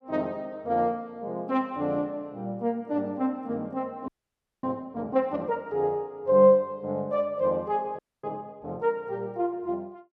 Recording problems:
audio freezing; at 4 s for 0.5 s and at 8 s

